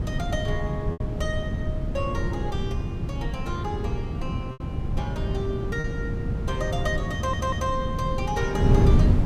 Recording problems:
wind noise; below 170 Hz, SNR -4 dB
lost packets; 2% of the sound replaced, filled with repeated pitch periods
stutter; at 7 s

